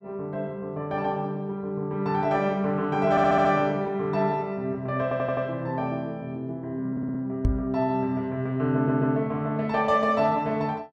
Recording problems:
audio stuttering; 4 times, first at 3 s
microphone bump; at 7.5 s; peak +5 dB vs average level

